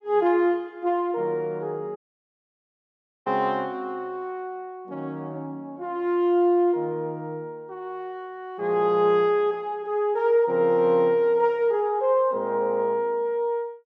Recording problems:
dropout; at 2 s for 1.5 s

